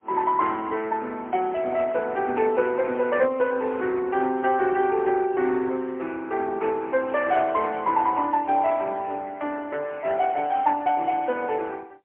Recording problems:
telephone audio; 260 Hz to 3 kHz, AMR-NB, then MP3

